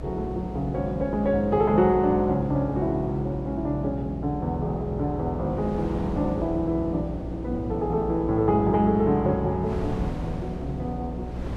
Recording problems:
hum; 60 Hz, harmonics up to 720 Hz, SNR 11 dB
wind on the microphone; below 330 Hz, SNR 15 dB

